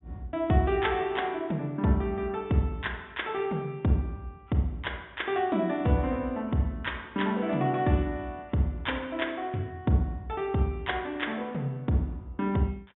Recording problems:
low-pass filter; nothing above 3.6 kHz

